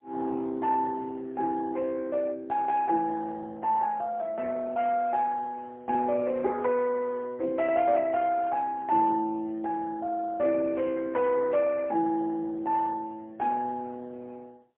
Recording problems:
telephone audio; 260 Hz to 3.4 kHz, AMR-NB, then MP3

